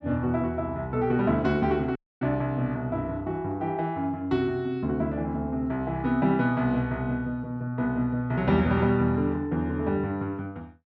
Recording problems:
audio cutting out; at 2 s

